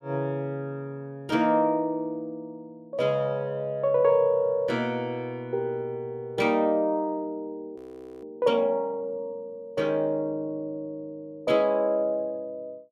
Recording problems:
audio freezing; at 8 s

